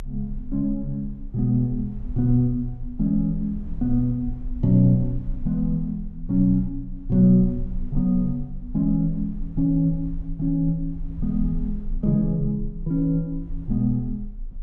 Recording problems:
low-frequency rumble; below 38 Hz, strongest tone 24 Hz, SNR 13 dB

